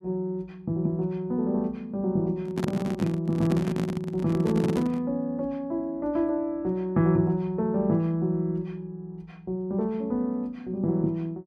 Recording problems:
handling noise; from 2.5 to 5 s; peak +4 dB vs average level

